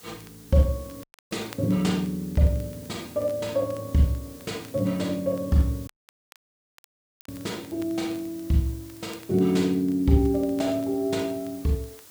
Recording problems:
hiss; slope -1 dB per octave, SNR 21 dB
crackling; vinyl, SNR 29 dB
dropout; at 1 s and at 6 s for 1.5 s

